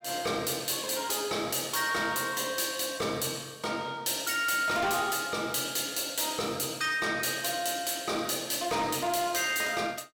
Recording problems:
distorted audio; soft clipping, signal-to-distortion ratio 12 dB

